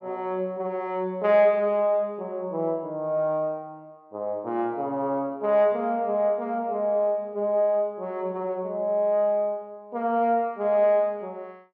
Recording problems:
none

